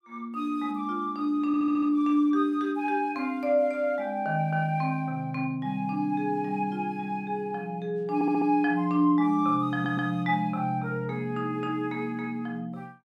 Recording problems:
stutter; at 1.5 s, at 8 s and at 9.5 s

